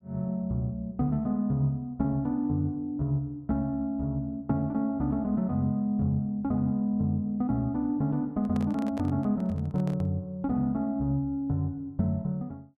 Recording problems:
microphone handling noise; from 8.5 to 10 s; peak -8 dB vs average level

